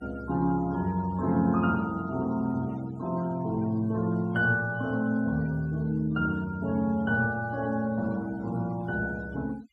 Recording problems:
denoising artefacts; signal-to-artefact ratio 22 dB

